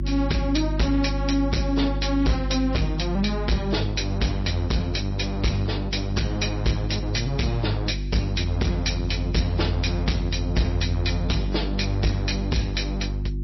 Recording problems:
lossy codec; MP3, log-spectral distance 4 dB, nothing above 5.7 kHz
distorted audio; hard clipping, signal-to-distortion ratio 7 dB
electrical hum; 50 Hz, harmonics up to 350 Hz, SNR 4 dB

